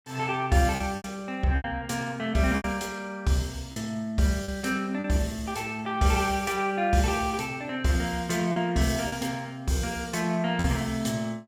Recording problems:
lost packets; 5% of the sound replaced, filled with repeated pitch periods

